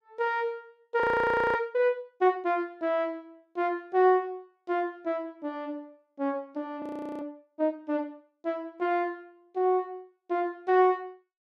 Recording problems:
audio freezing; at 1 s for 0.5 s and at 7 s

